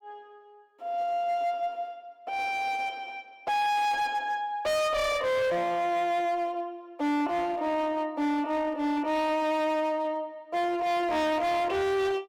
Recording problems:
distorted audio; hard clipping, uneven, signal-to-distortion ratio 6 dB

